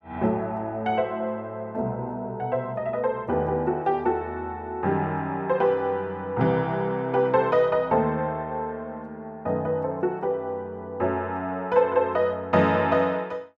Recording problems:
none

